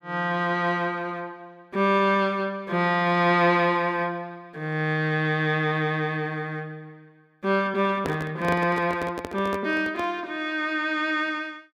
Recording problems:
microphone handling noise; from 8 to 10 s; peak -2 dB vs average level

